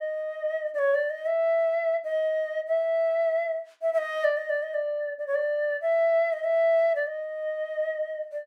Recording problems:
none

